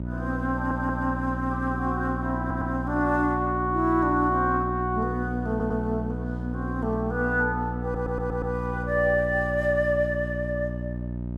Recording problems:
hum; 60 Hz, harmonics up to 660 Hz, SNR 5 dB
audio stuttering; 4 times, first at 0.5 s

